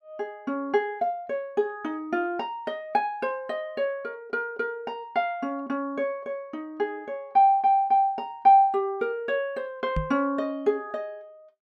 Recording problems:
microphone bump; at 10 s; peak +1 dB vs average level

